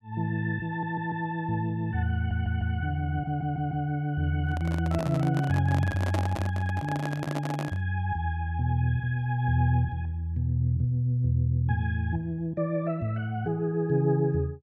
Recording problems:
audio stuttering; at 0.5 s, at 2 s and at 3.5 s
handling noise; from 4.5 to 8 s; peak 0 dB vs average level

